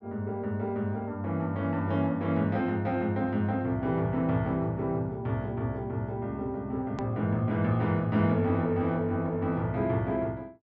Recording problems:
treble missing; nothing above 8 kHz
click at an edit; at 7 s

